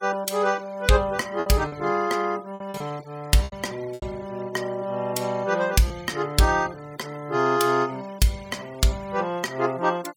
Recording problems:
denoising artefacts; signal-to-artefact ratio 22 dB
packet loss; 4% of the sound replaced, filled with repeated pitch periods

